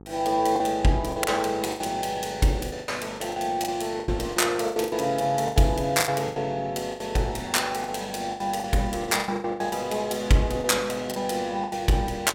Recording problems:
electrical hum; 50 Hz, harmonics up to 1.3 kHz, SNR 22 dB
packet loss; 14% of the sound replaced, filled with the last packet

